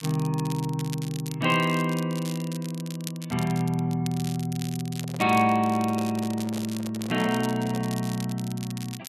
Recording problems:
crackling; vinyl, SNR 14 dB
handling noise; from 5 to 8 s; peak -10 dB vs average level

